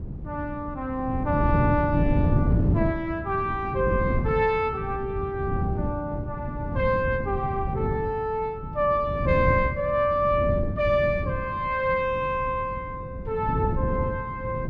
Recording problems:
wind on the microphone; below 190 Hz, SNR 3 dB

